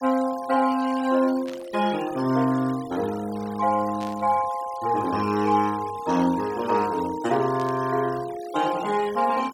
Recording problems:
denoising artefacts; signal-to-artefact ratio 18 dB
burst of static; at 1.5 s, at 4 s and at 7.5 s; peak -13 dB vs average level

